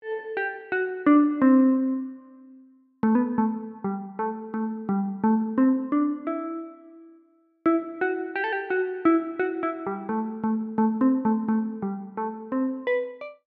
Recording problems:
none

